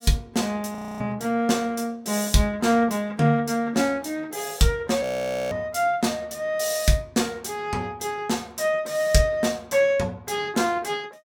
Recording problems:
frozen audio; at 1 s and at 5 s

